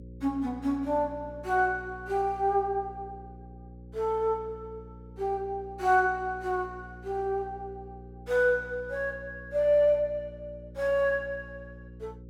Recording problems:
hum; 60 Hz, harmonics up to 540 Hz, SNR 18 dB

